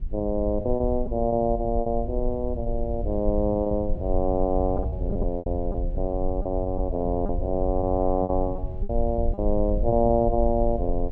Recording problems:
low-frequency rumble; below 62 Hz, SNR 6 dB
lost packets; 9% of the sound replaced, filled with repeated pitch periods

